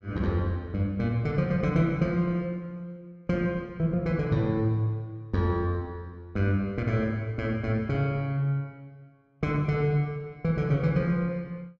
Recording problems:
none

